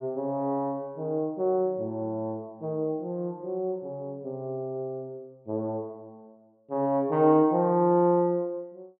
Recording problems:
none

